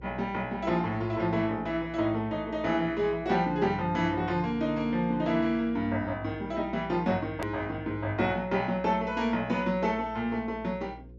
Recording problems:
treble cut off; nothing above 8 kHz
hum; 60 Hz, harmonics up to 540 Hz, SNR 19 dB
hard cut with a click; at 7.5 s

